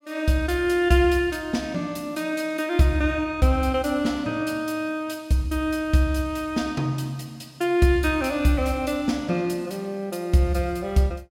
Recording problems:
none

